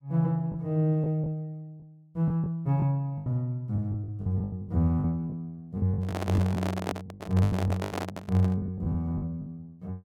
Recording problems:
packet loss; 13% of the sound replaced, filled with the last packet
microphone handling noise; from 6 to 8.5 s; peak +1 dB vs average level

